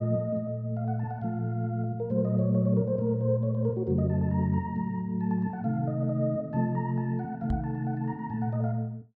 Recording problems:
knock on the microphone; at 7.5 s; peak +1 dB vs average level

